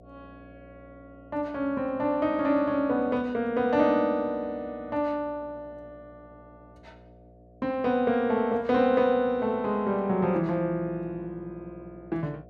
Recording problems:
hum; 60 Hz, harmonics up to 720 Hz, SNR 26 dB

